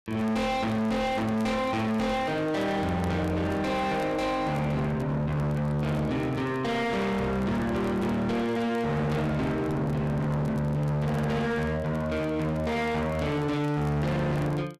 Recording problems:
distorted audio; hard clipping, uneven, signal-to-distortion ratio 6 dB
crackling; vinyl, SNR 29 dB

